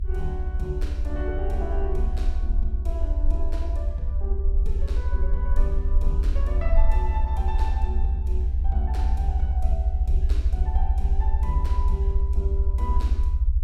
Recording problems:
low-frequency rumble; below 70 Hz, SNR -11 dB

